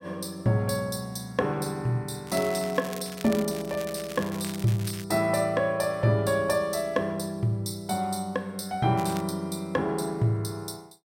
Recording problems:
crackling; from 2.5 to 5 s and at 9 s; loose cable, SNR 14 dB

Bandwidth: 16 kHz